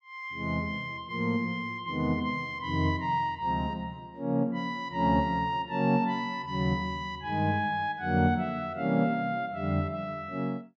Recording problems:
none

